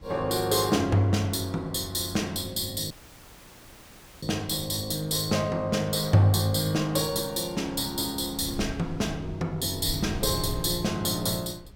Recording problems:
wind on the microphone; below 140 Hz, SNR 17 dB
dropout; at 3 s for 1.5 s

